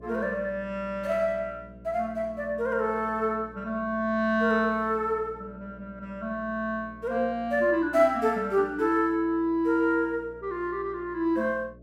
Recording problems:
hum; 60 Hz, harmonics up to 660 Hz, SNR 22 dB

